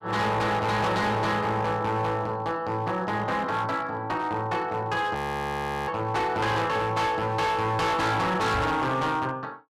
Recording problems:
distortion; hard clipping, uneven, signal-to-distortion ratio 8 dB
audio freezing; at 5 s for 0.5 s
knock on the microphone; at 8.5 s; peak 0 dB vs average level

